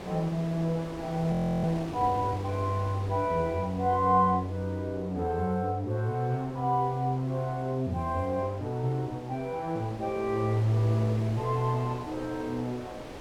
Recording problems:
wind on the microphone; below 1 kHz, SNR 15 dB
audio freezing; at 1.5 s

